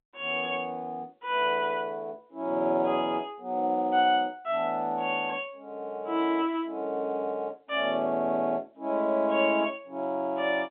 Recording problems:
telephone audio; 220 Hz to 3.6 kHz, G.711

